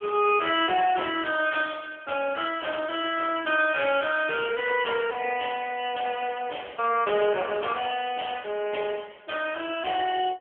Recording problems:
telephone audio; 320 Hz to 3.3 kHz, AMR-NB

